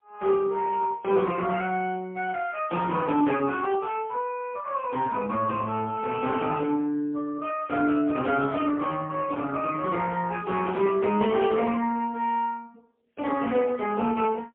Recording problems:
phone line; 150 Hz to 3.3 kHz, AMR-NB, then MP3

